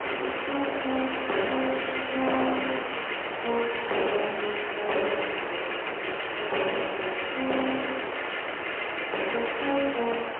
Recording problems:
telephone audio; 300 Hz to 3.1 kHz, AMR-NB, then MP3
distorted audio; soft clipping, signal-to-distortion ratio 8 dB
hiss; SNR 4 dB

